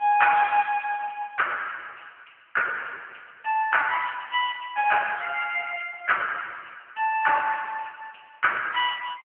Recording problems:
phone line; 410 Hz to 3.2 kHz, AMR-NB

